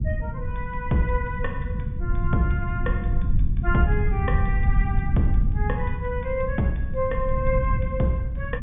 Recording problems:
treble cut off; nothing above 3.5 kHz
rumble; below 100 Hz, SNR -1 dB

